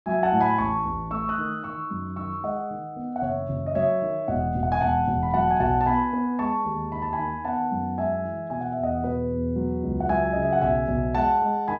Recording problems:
none

